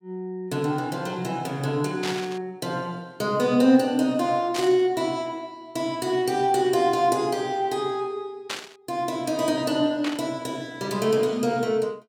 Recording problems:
static burst; 4 times, first at 2 s; peak -1 dB vs average level

